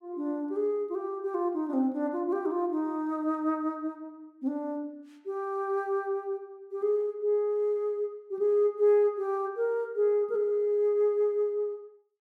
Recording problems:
none

